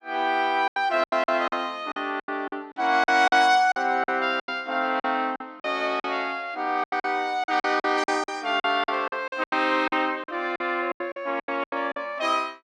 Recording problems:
lost packets; 15% of the sound replaced, filled with silence

